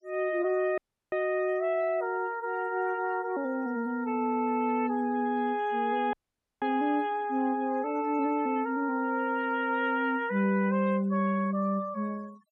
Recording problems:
denoising artefacts; signal-to-artefact ratio 24 dB
dropout; at 1 s and at 6 s

